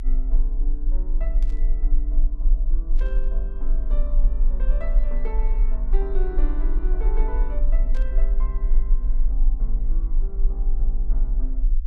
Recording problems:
low-frequency rumble; below 40 Hz, strongest tone 22 Hz, SNR -14 dB
burst of static; at 1.5 s, at 3 s and at 8 s; peak -6 dB vs average level

